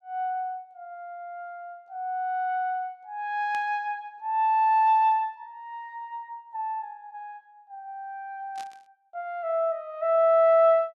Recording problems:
burst of static; at 3.5 s and at 8.5 s; peak -15 dB vs average level

